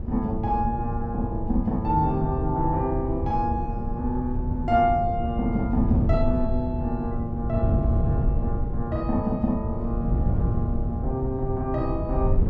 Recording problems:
wind on the microphone; below 130 Hz, SNR 1 dB

